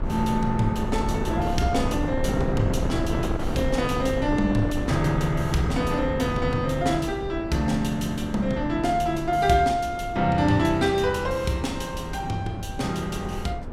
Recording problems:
wind on the microphone; below 340 Hz, SNR 6 dB

